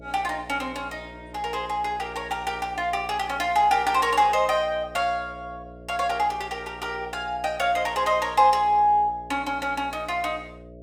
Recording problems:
electrical hum; 60 Hz, harmonics up to 660 Hz, SNR 20 dB

